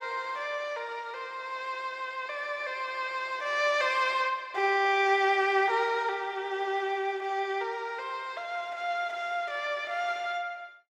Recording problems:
none

